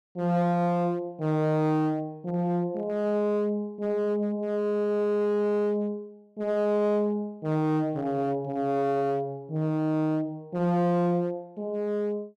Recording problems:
distortion; hard clipping, uneven, signal-to-distortion ratio 11 dB

